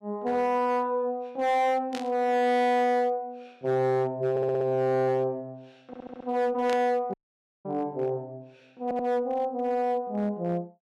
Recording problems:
distortion; hard clipping, signal-to-distortion ratio 10 dB
static burst; at 2 s and at 6.5 s; peak -7 dB vs average level
stutter; at 4.5 s, at 6 s and at 9 s
dropout; at 7 s for 0.5 s

